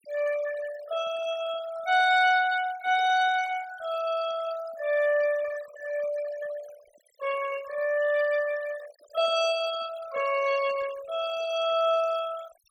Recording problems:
noise reduction artefacts; signal-to-artefact ratio 15 dB

